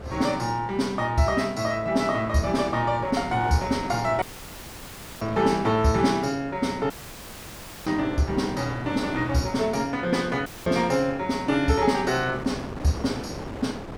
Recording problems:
wind on the microphone; below 800 Hz, SNR 12 dB
dropout; at 4 s for 1 s, at 7 s for 1 s and at 10 s; filled with static

